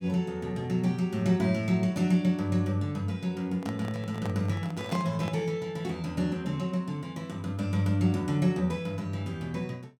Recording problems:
microphone handling noise; from 3.5 to 5.5 s; peak -6 dB vs average level

